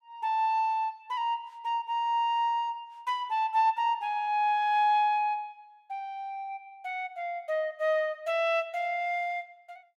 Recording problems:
none

